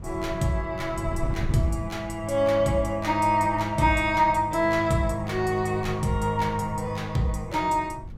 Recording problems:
wind noise; below 140 Hz, SNR 13 dB

